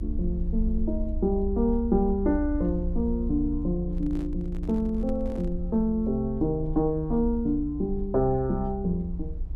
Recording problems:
rumble; below 62 Hz, strongest tone 30 Hz, SNR 7 dB
microphone handling noise; from 4 to 5.5 s; peak -12 dB vs average level

